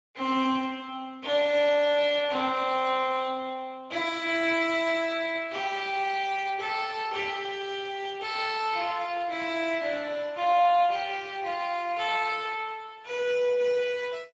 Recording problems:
lossy codec; MP2, then Speex, log-spectral distance 4 dB, nothing above 7.3 kHz

